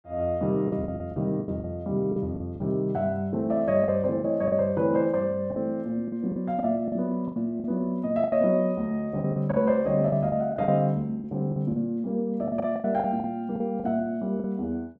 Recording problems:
lost packets; 11% of the sound replaced, filled with the last packet

